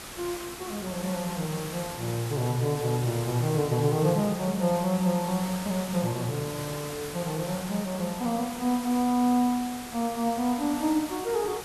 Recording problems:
hiss; slope -2 dB per octave, SNR 10 dB

